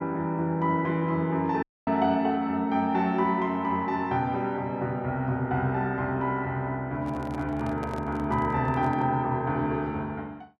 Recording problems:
audio cutting out; at 1.5 s
handling noise; from 7 to 9 s; peak -9 dB vs average level

